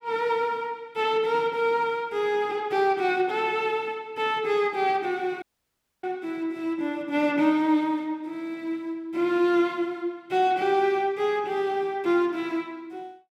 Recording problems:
audio cutting out; at 5.5 s for 0.5 s

